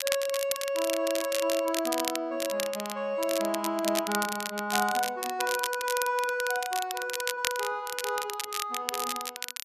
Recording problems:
crackling; vinyl, SNR 4 dB

